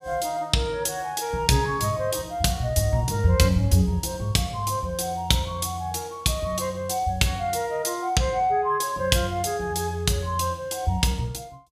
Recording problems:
none

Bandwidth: 14.5 kHz